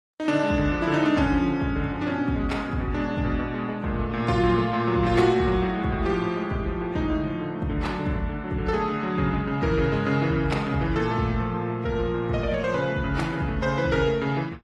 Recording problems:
lossy codec; AAC, then Opus, log-spectral distance 2 dB

